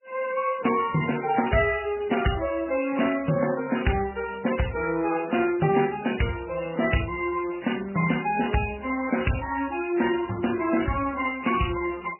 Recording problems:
lossy compression; MP3, then Vorbis, log-spectral distance 9 dB, nothing above 2.8 kHz

